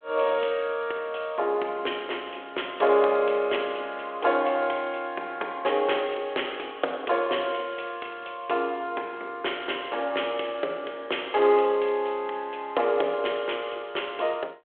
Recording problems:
phone line; 320 Hz to 3.4 kHz, G.726

